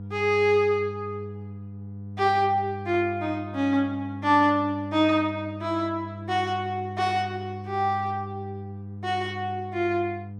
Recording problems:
hum; 50 Hz, harmonics up to 500 Hz, SNR 12 dB

